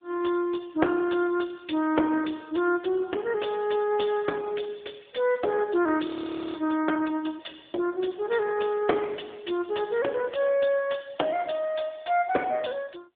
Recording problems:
phone line; 260 Hz to 3.5 kHz, AMR-NB
frozen audio; at 6 s

